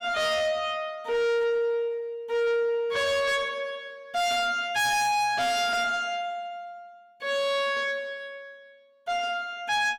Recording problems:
distorted audio; soft clipping, signal-to-distortion ratio 6 dB

